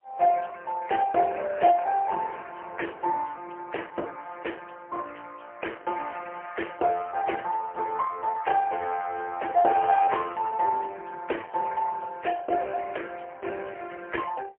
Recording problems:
telephone audio; 340 Hz to 3.1 kHz, AMR-NB, then MP3

